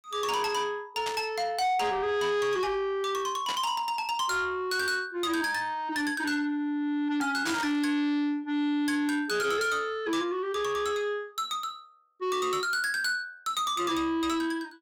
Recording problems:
distorted audio; soft clipping, signal-to-distortion ratio 11 dB
static burst; at 1 s, at 3.5 s and at 7.5 s; peak -1 dB vs average level

